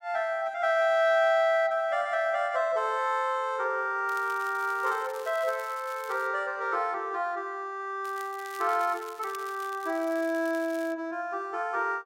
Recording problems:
crackle; from 4 to 6.5 s and from 8 to 11 s; loose cable, SNR 21 dB

